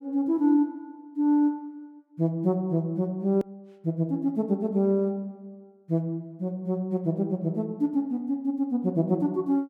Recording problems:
click at an edit; at 3.5 s

